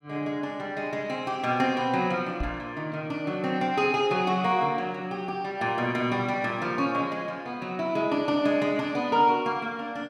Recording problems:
microphone thump; at 2.5 s; peak -3 dB vs average level

